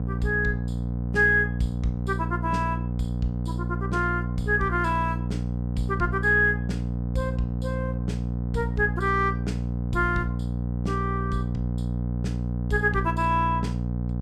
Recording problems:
hum; 60 Hz, harmonics up to 780 Hz, SNR 2 dB

